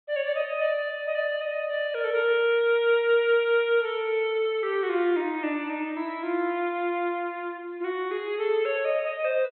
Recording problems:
treble missing; nothing above 4.1 kHz

